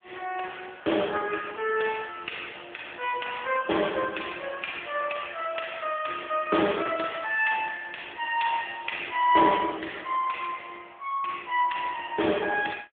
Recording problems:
phone line; 240 Hz to 3.4 kHz, AMR-NB

